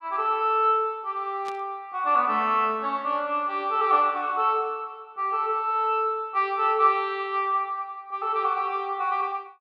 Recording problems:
burst of static; at 1.5 s; peak -13 dB vs average level

